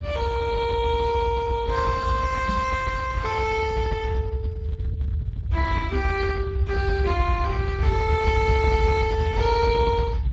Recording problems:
lossy codec; Speex, log-spectral distance 2 dB, nothing above 7.6 kHz
rumble; below 100 Hz, SNR 2 dB
microphone bump; at 2.5 s and at 6 s; peak -1 dB vs average level

